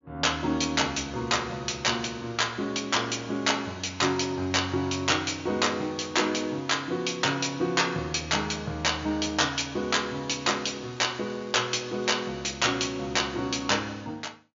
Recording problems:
treble cut off; nothing above 7.2 kHz
crackle; from 10 to 12 s; loose cable, SNR 29 dB

